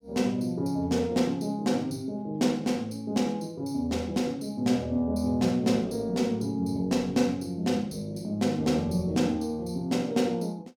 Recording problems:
none

